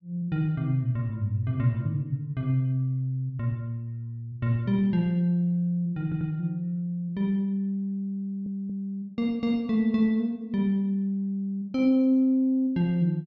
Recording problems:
treble cut off; nothing above 8 kHz
stutter; at 6 s and at 8 s

